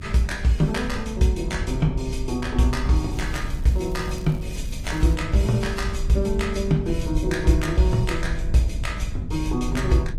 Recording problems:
lossy compression; AAC, log-spectral distance 2 dB
hum; 50 Hz, harmonics up to 550 Hz, SNR 19 dB
low-frequency rumble; below 74 Hz, SNR 7 dB
crackling; from 3 to 5 s; loose cable, SNR 25 dB

